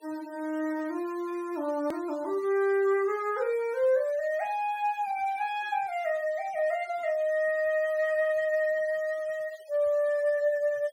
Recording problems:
denoising artefacts; signal-to-artefact ratio 25 dB
hard cut with a click; at 2 s

